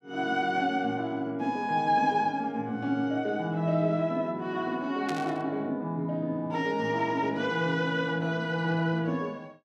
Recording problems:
burst of static; at 5 s; peak -6 dB vs average level

